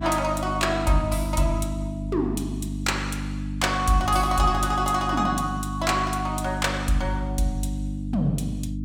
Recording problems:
hum; 50 Hz, harmonics up to 300 Hz, SNR 6 dB

